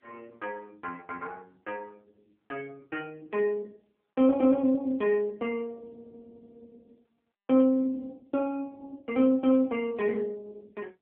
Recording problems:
telephone audio; 300 Hz to 3.1 kHz, AMR-NB

